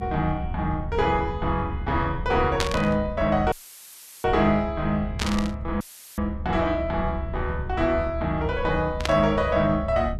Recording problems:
low-frequency rumble; below 94 Hz, strongest tone 70 Hz, SNR 8 dB
burst of static; at 2.5 s, at 5 s and at 9 s; peak +4 dB vs average level
dropout; at 3.5 s for 0.5 s and at 6 s; filled with static

